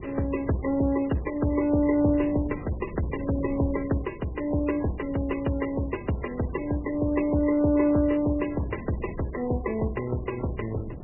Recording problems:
lossy compression; MP3, log-spectral distance 4 dB, nothing above 2.9 kHz
wind noise; below 300 Hz, SNR 15 dB

